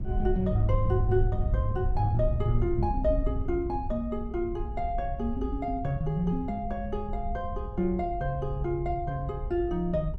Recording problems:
wind on the microphone; below 78 Hz, SNR 4 dB

